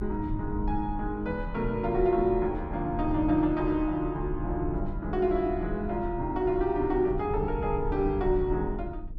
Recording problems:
low-frequency rumble; below 90 Hz, SNR 9 dB

